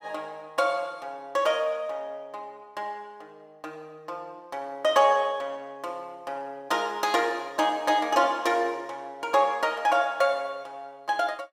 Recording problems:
none

